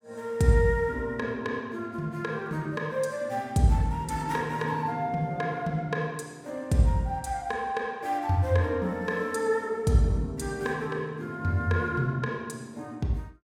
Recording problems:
none

